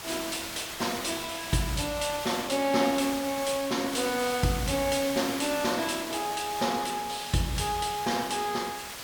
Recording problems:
hiss; slope -1 dB per octave, SNR 8 dB

